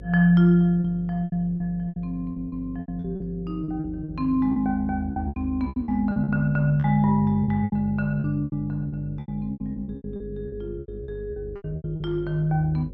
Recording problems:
mains hum; 50 Hz, harmonics up to 550 Hz, SNR 16 dB
packet loss; 16% of the sound replaced, filled with repeated pitch periods

